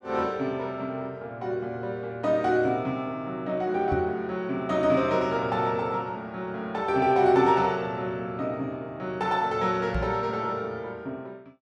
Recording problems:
knock on the microphone; at 4 s and at 10 s; peak 0 dB vs average level

